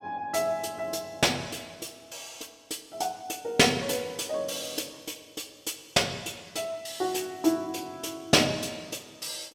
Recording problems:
none

